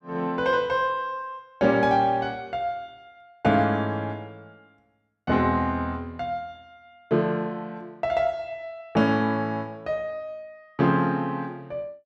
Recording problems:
none

